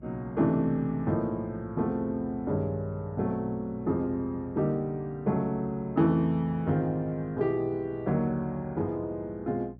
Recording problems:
electrical hum; 60 Hz, harmonics up to 540 Hz, SNR 21 dB

